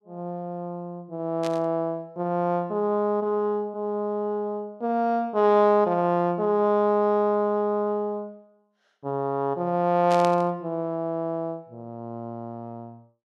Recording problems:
burst of static; at 1.5 s and at 10 s; peak -7 dB vs average level

